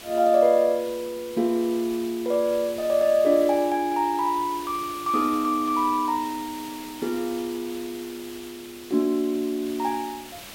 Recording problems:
background hiss; slope -1 dB per octave, SNR 17 dB

